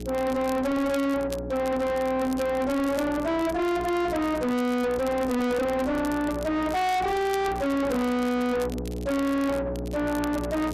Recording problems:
distorted audio; soft clipping, signal-to-distortion ratio 5 dB
hum; 60 Hz, harmonics up to 960 Hz, SNR 10 dB
crackle; vinyl, SNR 20 dB

